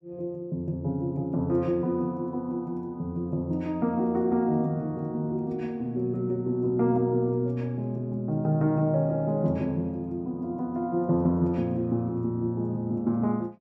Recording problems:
none

